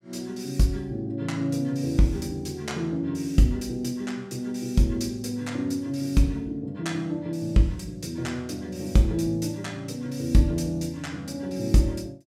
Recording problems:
none

